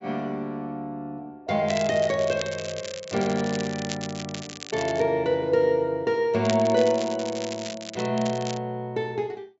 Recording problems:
treble cut off; nothing above 8 kHz
crackle; from 1.5 to 5 s and from 6.5 to 8.5 s; loose cable, SNR 12 dB

